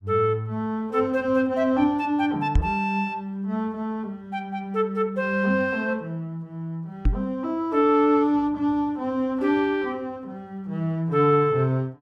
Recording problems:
microphone bump; at 2.5 s and at 7 s; peak +6 dB vs average level

